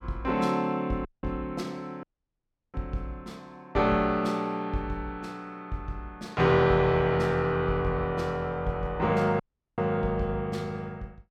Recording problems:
dropout; at 1 s, at 2 s for 0.5 s and at 9.5 s

